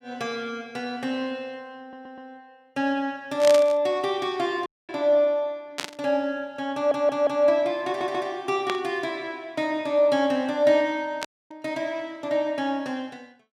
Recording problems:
stutter; at 2 s, at 6.5 s and at 8 s
static burst; 4 times, first at 3.5 s; peak +1 dB vs average level
dropout; at 4.5 s and at 11 s

